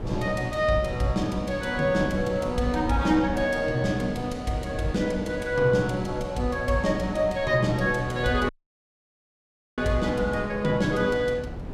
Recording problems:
wind noise; below 330 Hz, SNR 12 dB
audio cutting out; at 8.5 s for 1.5 s

